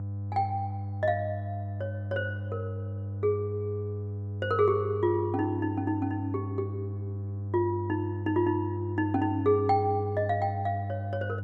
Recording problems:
electrical hum; 50 Hz, harmonics up to 500 Hz, SNR 5 dB

